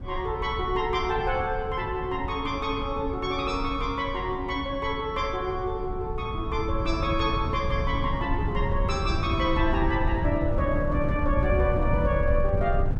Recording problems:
wind on the microphone; below 120 Hz, SNR 3 dB

